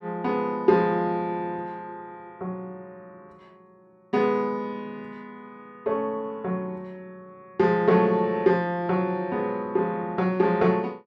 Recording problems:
none

